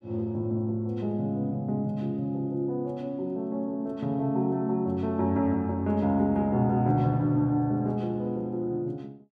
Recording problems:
none

